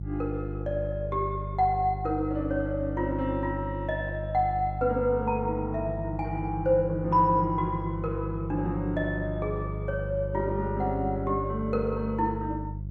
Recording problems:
mains hum; 50 Hz, harmonics up to 350 Hz, SNR 6 dB

